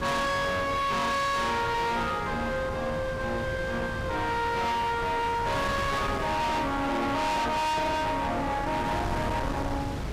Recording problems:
distorted audio; hard clipping, uneven, signal-to-distortion ratio 5 dB
wind on the microphone; below 1 kHz, SNR 7 dB

